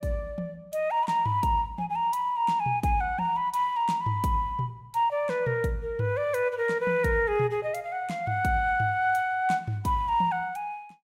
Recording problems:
none

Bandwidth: 16 kHz